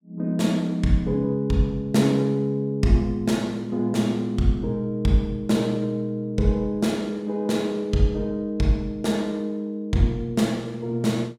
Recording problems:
none

